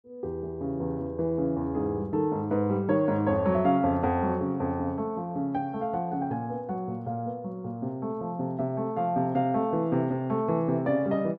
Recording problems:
none

